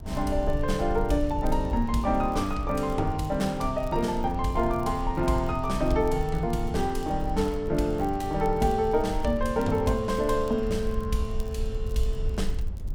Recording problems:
low-frequency rumble; below 64 Hz, SNR 8 dB
crackling; vinyl, SNR 28 dB

